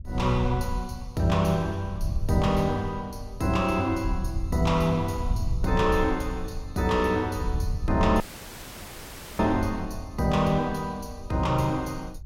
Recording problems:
wind noise; below 82 Hz, SNR 9 dB
dropout; at 8 s for 1 s

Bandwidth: 16.5 kHz